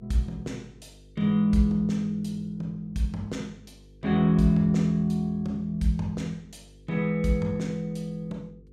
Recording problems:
hum; 50 Hz, harmonics up to 500 Hz, SNR 27 dB

